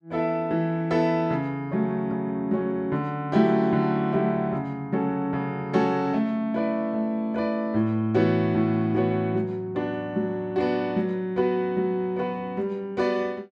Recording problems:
none

